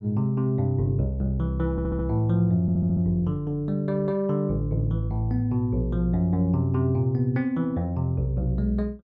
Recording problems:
stutter; at 1.5 s and at 2.5 s

